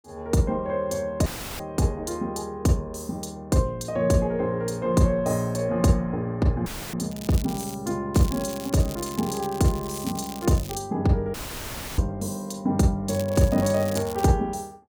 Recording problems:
dropout; at 1.5 s, at 6.5 s and at 11 s for 0.5 s; filled with static
crackling; at 7 s, from 8 to 11 s and from 13 to 14 s; loose cable, SNR 15 dB

